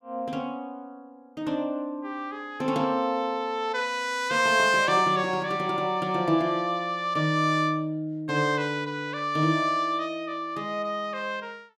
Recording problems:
none

